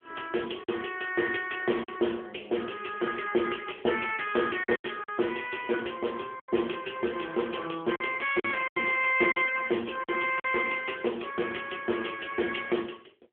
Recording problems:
telephone audio; 260 Hz to 3.3 kHz, AMR-NB
packet loss; 5% of the sound replaced, filled with silence

